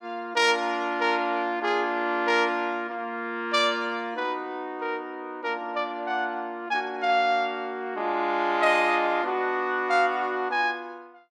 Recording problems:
none

